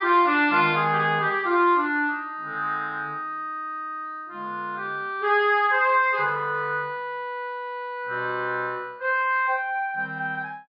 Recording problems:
treble missing; nothing above 5.5 kHz

